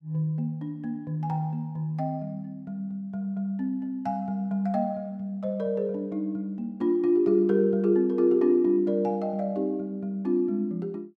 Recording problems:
none

